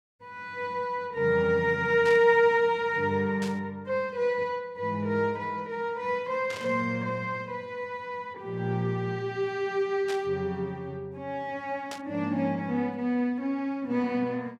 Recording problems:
burst of static; 5 times, first at 2 s; peak -7 dB vs average level

